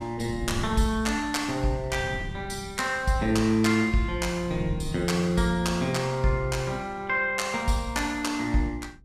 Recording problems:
wind noise; below 170 Hz, SNR 13 dB

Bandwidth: 14.5 kHz